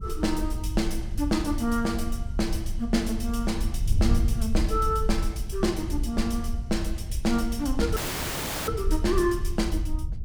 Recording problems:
rumble; below 58 Hz, SNR 6 dB
wind noise; below 74 Hz, SNR 5 dB
audio cutting out; at 8 s for 0.5 s

